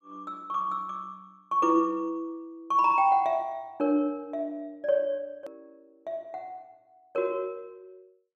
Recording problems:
edit click; at 5.5 s

